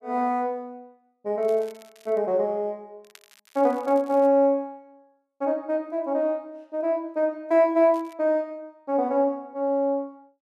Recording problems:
crackle; at 1.5 s, from 3 to 4.5 s and at 8 s; loose cable, SNR 29 dB

